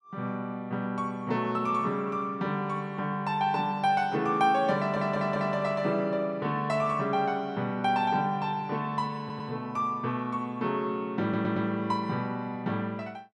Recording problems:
stutter; at 5 s, at 9 s and at 11 s

